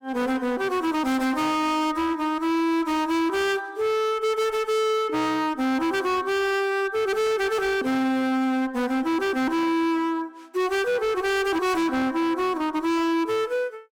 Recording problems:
distortion; hard clipping, signal-to-distortion ratio 5 dB

